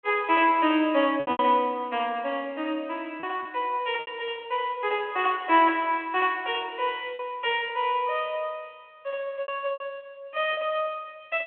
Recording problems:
phone line; 280 Hz to 3.2 kHz, G.726
lost packets; 5% of the sound replaced, filled with repeated pitch periods

